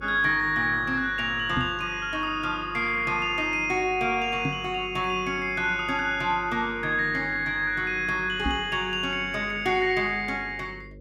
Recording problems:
hum; 50 Hz, harmonics up to 550 Hz, SNR 20 dB
microphone thump; at 1.5 s, at 4.5 s and at 8.5 s; peak 0 dB vs average level

